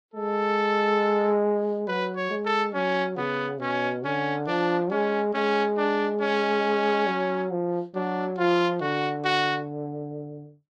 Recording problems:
codec artefacts; Vorbis, log-spectral distance 2 dB

